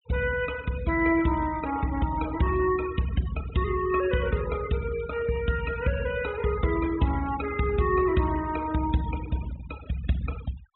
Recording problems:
treble cut off; nothing above 3.8 kHz
denoising artefacts; signal-to-artefact ratio 15 dB

